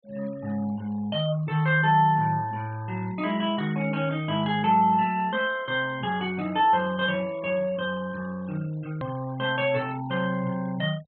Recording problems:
treble cut off; nothing above 4.2 kHz
noise reduction artefacts; signal-to-artefact ratio 23 dB
edit click; at 9 s

